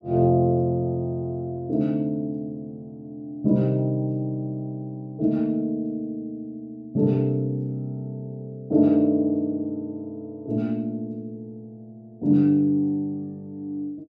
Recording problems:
none

